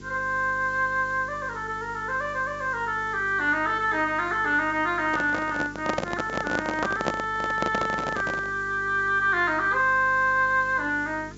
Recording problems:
low-pass filter; nothing above 8 kHz
hum; 50 Hz, harmonics up to 450 Hz, SNR 20 dB
background hiss; slope +1 dB per octave, SNR 27 dB
microphone handling noise; from 5 to 8.5 s; peak +2 dB vs average level

